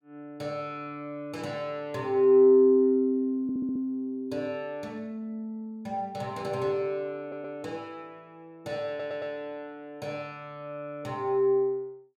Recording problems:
audio stuttering; at 3.5 s, at 7 s and at 9 s

